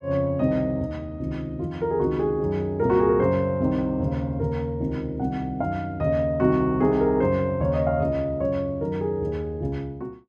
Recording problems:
none

